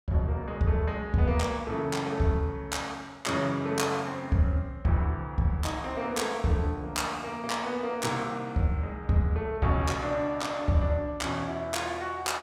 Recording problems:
none

